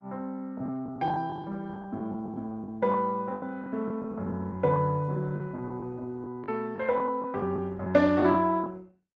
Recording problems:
codec artefacts; Opus, log-spectral distance 2 dB
packet loss; 11% of the sound replaced, filled with the last packet

